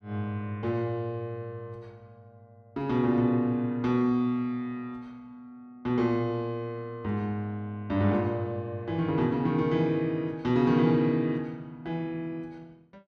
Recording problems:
none

